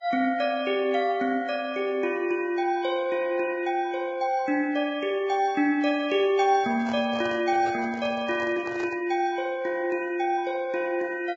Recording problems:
lossy codec; Vorbis, log-spectral distance 2 dB
handling noise; from 6.5 to 9 s; peak -8 dB vs average level

